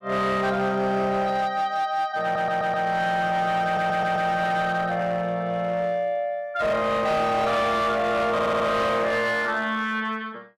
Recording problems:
distortion; hard clipping, signal-to-distortion ratio 11 dB
audio stuttering; at 2 s, at 3.5 s and at 8.5 s

